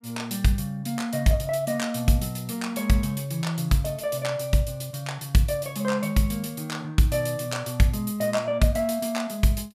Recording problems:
none

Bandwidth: 15.5 kHz